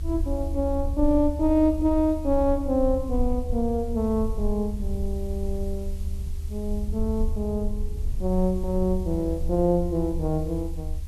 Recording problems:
hiss; slope 0 dB per octave, SNR 27 dB
rumble; below 74 Hz, strongest tone 24 Hz, SNR 6 dB

